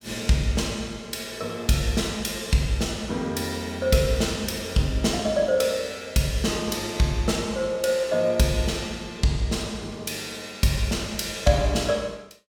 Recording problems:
none

